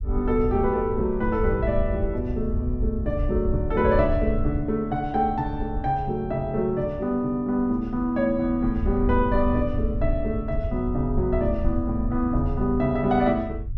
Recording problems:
low-frequency rumble; below 80 Hz, SNR 6 dB

